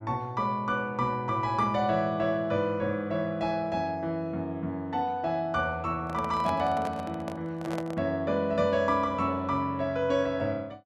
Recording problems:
handling noise; from 6 to 8 s; peak -3 dB vs average level

